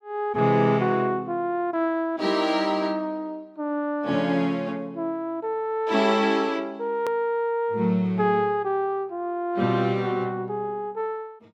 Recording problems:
edit click; at 7 s

